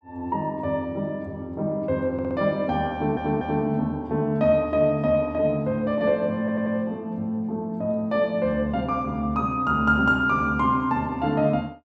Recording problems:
stutter; at 2 s, at 3 s and at 6.5 s

